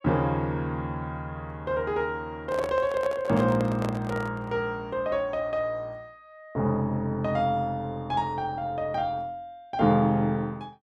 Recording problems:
microphone handling noise; from 2.5 to 4.5 s; peak -2 dB vs average level

